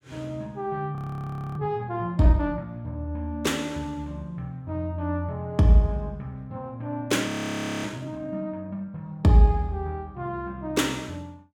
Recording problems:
audio freezing; at 1 s for 0.5 s and at 7.5 s for 0.5 s

